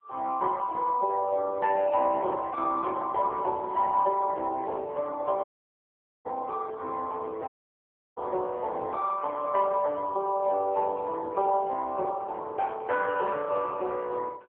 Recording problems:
telephone audio; 300 Hz to 2 kHz, AMR-NB
audio cutting out; at 5.5 s for 1 s and at 7.5 s for 0.5 s

